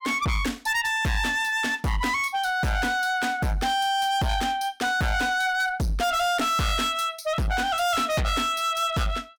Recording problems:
distortion; hard clipping, signal-to-distortion ratio 6 dB

